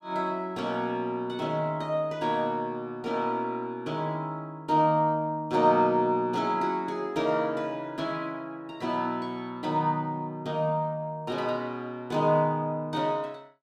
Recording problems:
none

